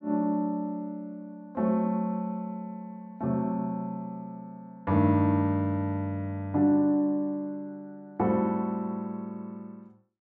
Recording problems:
none

